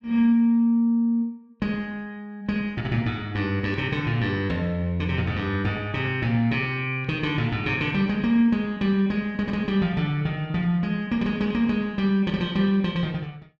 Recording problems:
none

